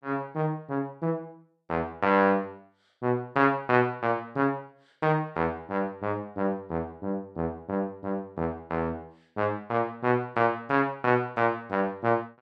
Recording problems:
none

